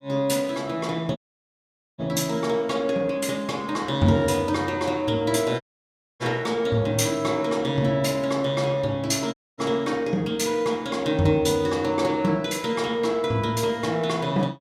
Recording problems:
dropout; at 1 s for 1 s, at 5.5 s for 0.5 s and at 9.5 s

